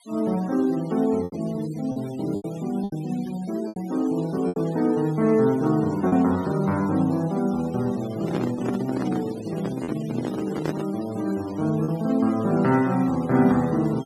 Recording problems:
denoising artefacts; signal-to-artefact ratio 20 dB
packet loss; 4% of the sound replaced, filled with repeated pitch periods
handling noise; from 8 to 11 s; peak +1 dB vs average level

